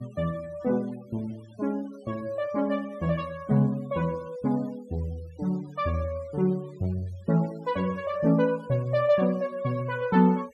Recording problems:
denoising artefacts; signal-to-artefact ratio 25 dB

